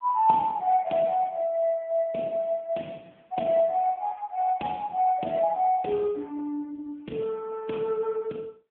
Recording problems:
phone line; 220 Hz to 3.7 kHz, AMR-NB

